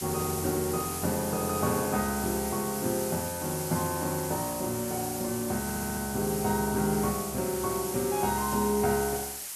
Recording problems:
background hiss; slope +2 dB per octave, SNR 5 dB
audio stuttering; at 5.5 s

